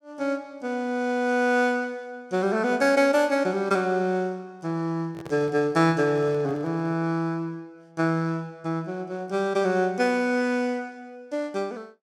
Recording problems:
handling noise; from 5 to 7 s; peak -10 dB vs average level

